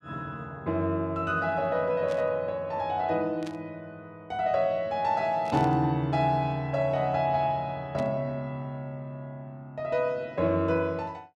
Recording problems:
burst of static; 4 times, first at 2 s; peak -12 dB vs average level

